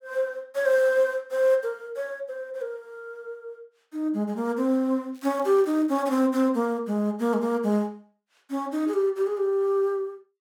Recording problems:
crackle; at 5 s; loose cable, SNR 30 dB

